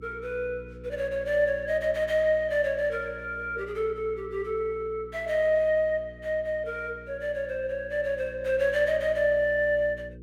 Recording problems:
hum; 60 Hz, harmonics up to 480 Hz, SNR 19 dB

